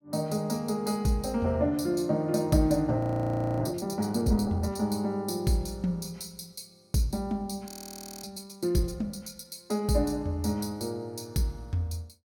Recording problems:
audio freezing; at 3 s for 0.5 s and at 7.5 s for 0.5 s

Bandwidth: 17 kHz